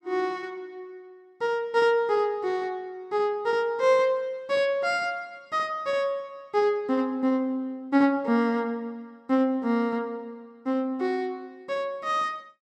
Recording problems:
none

